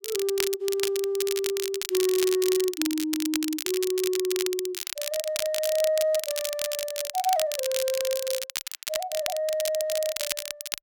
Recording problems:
crackling; vinyl, SNR 4 dB

